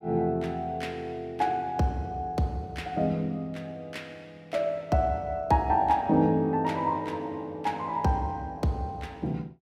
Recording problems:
none

